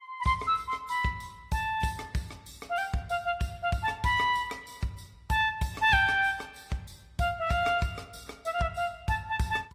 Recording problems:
codec artefacts; Opus, then AAC, log-spectral distance 4 dB, nothing above 15.1 kHz

